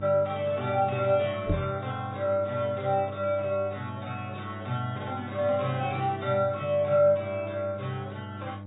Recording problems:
codec artefacts; AAC, log-spectral distance 2 dB, nothing above 3.8 kHz
hum; 50 Hz, harmonics up to 1.1 kHz, SNR 12 dB
microphone thump; at 1.5 s; peak +3 dB vs average level

